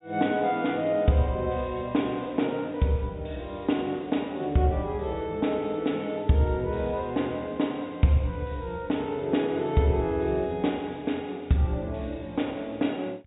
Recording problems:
treble missing; nothing above 4 kHz

